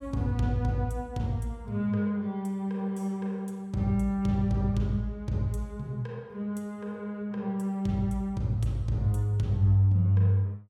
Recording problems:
none

